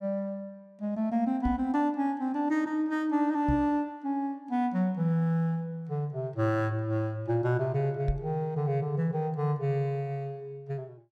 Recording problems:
microphone thump; at 1.5 s, at 3.5 s and at 8 s; peak +2 dB vs average level

